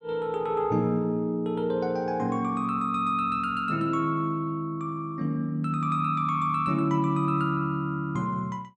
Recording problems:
none

